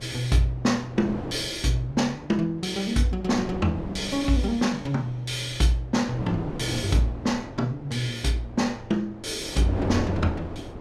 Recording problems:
wind on the microphone; below 530 Hz, SNR 11 dB

